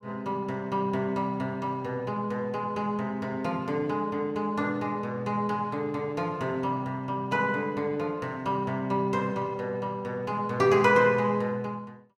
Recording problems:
none

